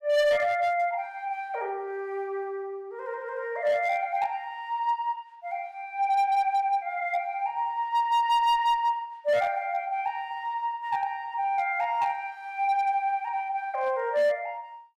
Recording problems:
distorted audio; hard clipping, signal-to-distortion ratio 11 dB

